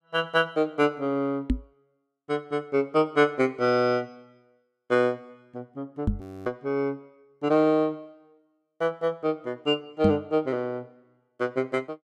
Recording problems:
microphone bump; at 1.5 s, at 6 s and at 10 s; peak +6 dB vs average level
audio freezing; at 6 s

